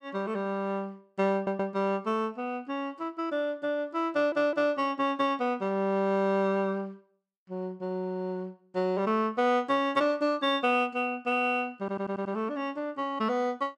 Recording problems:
stutter; at 1.5 s, at 4 s and at 12 s

